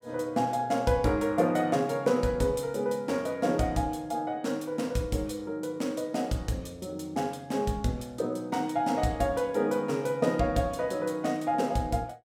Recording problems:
none

